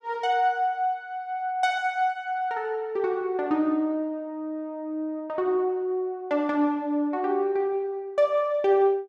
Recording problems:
none

